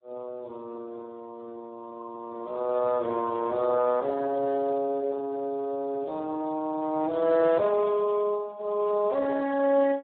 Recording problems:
telephone audio; 240 Hz to 2.2 kHz, Speex

